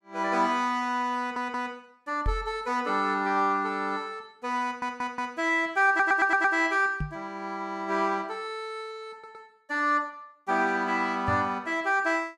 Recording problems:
stutter; 4 times, first at 1 s
microphone bump; at 2.5 s, at 7 s and at 11 s; peak 0 dB vs average level

